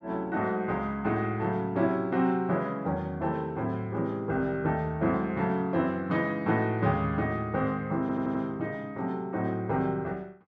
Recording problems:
audio stuttering; at 8 s

